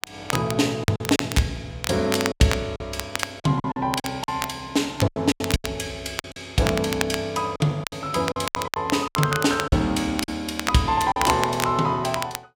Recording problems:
crackling; vinyl, SNR 8 dB
lost packets; 10% of the sound replaced, filled with silence

